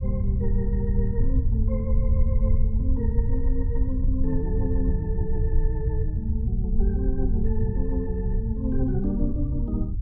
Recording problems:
low-frequency rumble; below 74 Hz, SNR -4 dB

